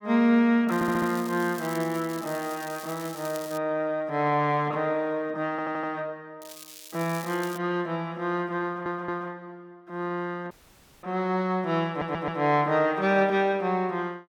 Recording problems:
crackling; from 0.5 to 3.5 s and from 6.5 to 7.5 s; loose cable, SNR 16 dB
audio stuttering; 4 times, first at 0.5 s
audio cutting out; at 11 s for 0.5 s

